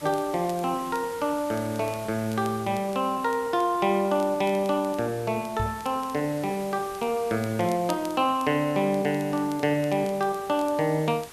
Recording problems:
background hiss; slope -2 dB per octave, SNR 18 dB
crackling; vinyl, SNR 24 dB
knock on the microphone; at 5.5 s; peak -1 dB vs average level

